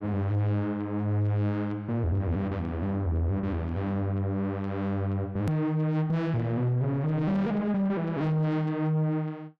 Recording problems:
distortion; soft clipping, signal-to-distortion ratio 10 dB
edit click; at 5.5 s

